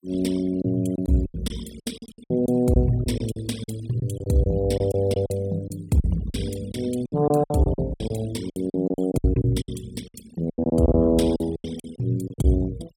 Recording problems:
denoising artefacts; signal-to-artefact ratio 18 dB
packet loss; 15% of the sound replaced, filled with silence

